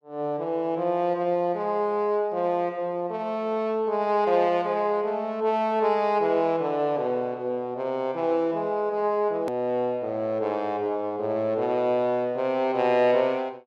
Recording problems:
click at an edit; at 9.5 s

